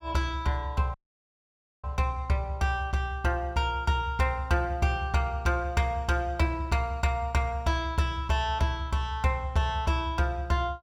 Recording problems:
dropout; at 1 s for 1 s

